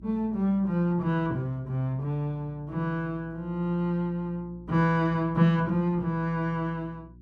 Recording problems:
hum; 60 Hz, harmonics up to 360 Hz, SNR 22 dB

